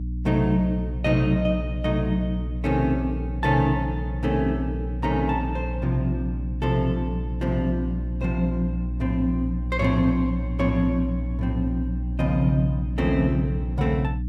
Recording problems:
electrical hum; 60 Hz, harmonics up to 300 Hz, SNR 4 dB

